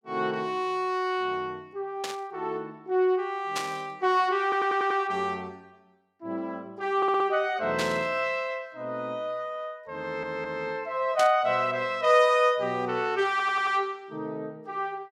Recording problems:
burst of static; 4 times, first at 2 s; peak 0 dB vs average level
audio stuttering; 4 times, first at 4.5 s

